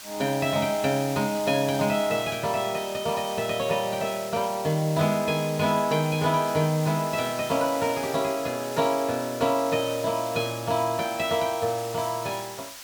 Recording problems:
background hiss; slope +2 dB per octave, SNR 12 dB

